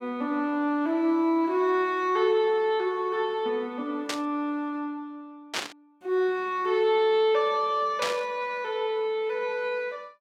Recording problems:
static burst; at 4 s, at 5.5 s and at 8 s; peak +1 dB vs average level

